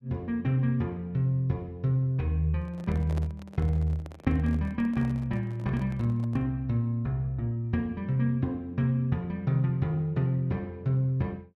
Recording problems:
handling noise; from 2.5 to 6.5 s; peak -8 dB vs average level

